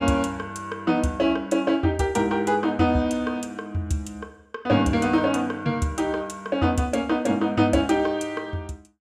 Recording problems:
none

